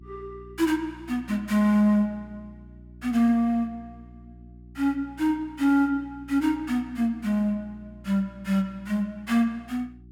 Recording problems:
hum; 60 Hz, harmonics up to 360 Hz, SNR 22 dB

